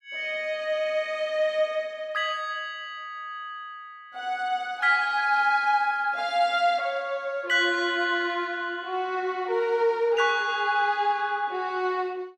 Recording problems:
none

